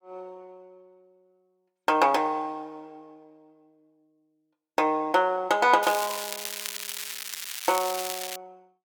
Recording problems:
crackle; from 6 s on; loose cable, SNR 8 dB

